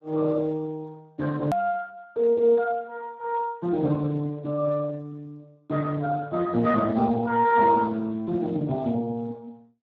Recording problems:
lossy compression; Speex, log-spectral distance 2 dB, nothing above 13.1 kHz
click at an edit; at 1.5 s

